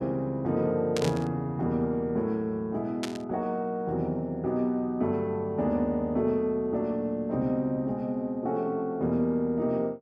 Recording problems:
burst of static; at 1 s and at 3 s; peak -1 dB vs average level

